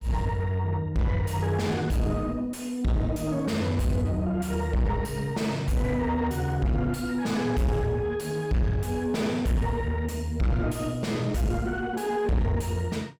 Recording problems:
distorted audio; soft clipping, signal-to-distortion ratio 6 dB

